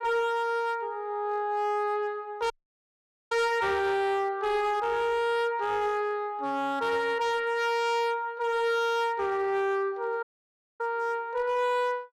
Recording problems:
distortion; hard clipping, signal-to-distortion ratio 11 dB
audio cutting out; at 2.5 s for 1 s and at 10 s for 0.5 s

